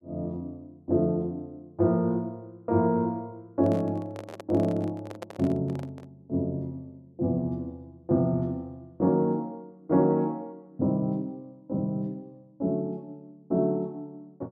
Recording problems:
microphone handling noise; from 3.5 to 6 s; peak -6 dB vs average level

